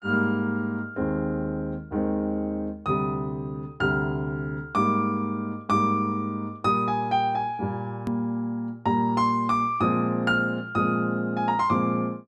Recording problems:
click at an edit; at 8 s

